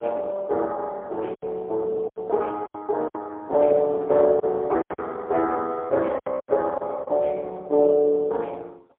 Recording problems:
phone line; 340 Hz to 2 kHz, AMR-NB, then MP3
lost packets; 7% of the sound replaced, filled with silence

